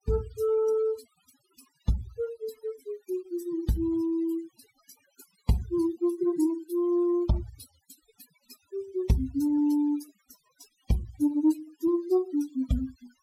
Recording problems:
noise reduction artefacts; signal-to-artefact ratio 22 dB

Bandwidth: 16.5 kHz